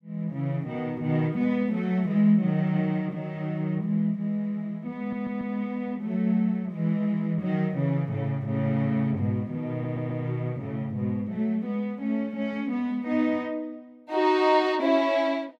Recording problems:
stutter; at 5 s and at 9.5 s

